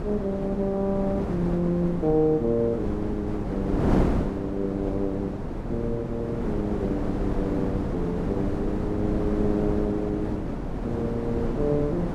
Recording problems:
wind noise; below 410 Hz, SNR 2 dB

